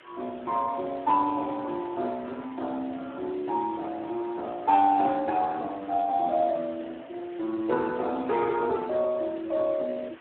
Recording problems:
phone line; 220 Hz to 3.2 kHz, Speex
background hiss; SNR 23 dB

